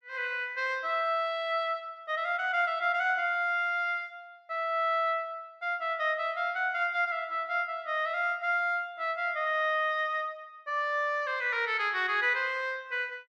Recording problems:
none

